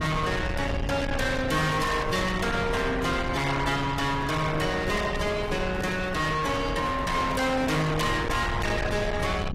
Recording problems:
codec artefacts; AAC, log-spectral distance 4 dB
distortion; soft clipping, signal-to-distortion ratio 6 dB
rumble; below 1 kHz, SNR 6 dB
microphone handling noise; from 4 to 8 s; peak -5 dB vs average level

